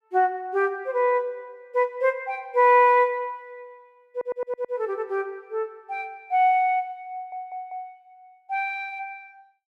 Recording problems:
audio stuttering; at 4 s and at 7 s

